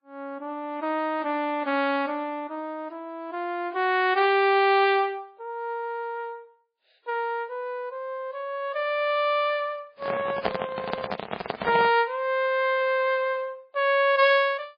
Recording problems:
lossy compression; MP3, then AAC, log-spectral distance 2 dB, nothing above 5 kHz
microphone handling noise; from 10 to 12 s; peak +3 dB vs average level

